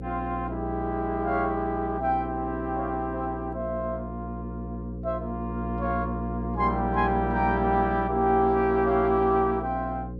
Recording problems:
mains hum; 60 Hz, harmonics up to 540 Hz, SNR 8 dB

